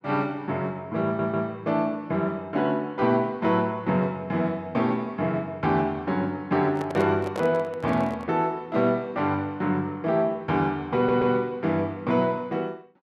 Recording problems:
audio stuttering; at 1 s and at 11 s
handling noise; from 6.5 to 8.5 s; peak -3 dB vs average level

